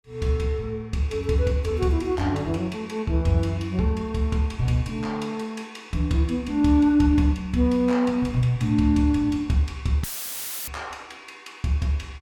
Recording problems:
audio cutting out; at 10 s for 0.5 s; filled with static

